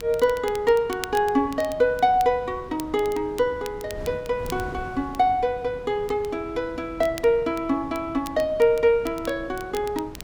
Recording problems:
wind noise; below 350 Hz, SNR 18 dB
crackling; vinyl, SNR 20 dB

